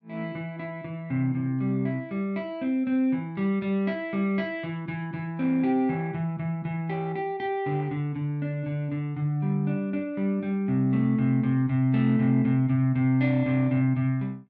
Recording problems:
none

